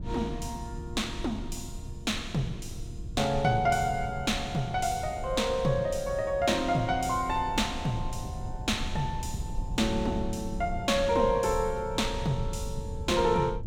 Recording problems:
low-frequency rumble; below 100 Hz, SNR 10 dB

